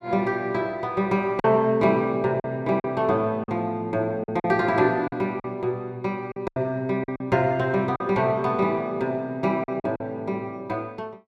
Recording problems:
lost packets; 6% of the sound replaced, filled with silence

